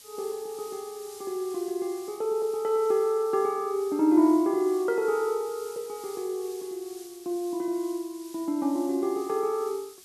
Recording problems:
background hiss; SNR 19 dB

